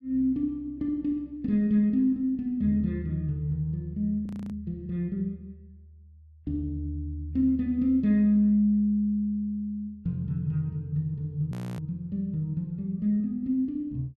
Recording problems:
audio freezing; at 4.5 s and at 12 s

